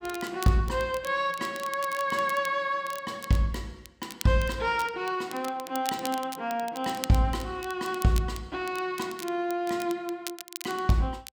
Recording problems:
crackling; vinyl, SNR 14 dB

